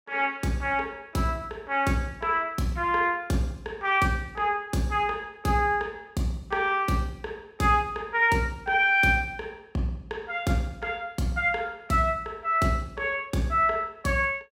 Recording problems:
none

